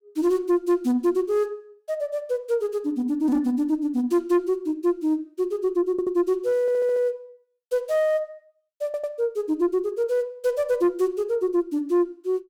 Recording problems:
distorted audio; soft clipping, signal-to-distortion ratio 11 dB
stutter; at 6 s, at 6.5 s and at 9 s

